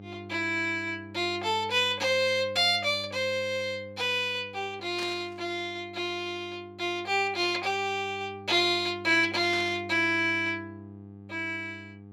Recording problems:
electrical hum; 50 Hz, harmonics up to 800 Hz, SNR 19 dB
burst of static; at 5 s and at 9.5 s; peak -8 dB vs average level

